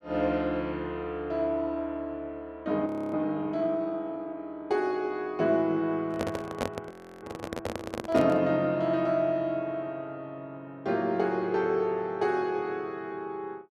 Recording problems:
audio freezing; at 3 s and at 7 s
handling noise; from 6 to 8.5 s; peak +2 dB vs average level

